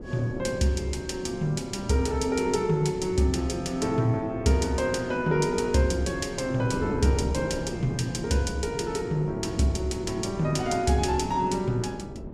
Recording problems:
wind on the microphone; below 380 Hz, SNR 10 dB

